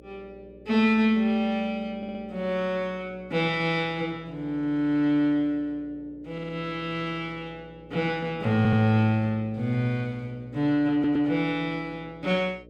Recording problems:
electrical hum; 60 Hz, harmonics up to 600 Hz, SNR 24 dB
stutter; 4 times, first at 2 s

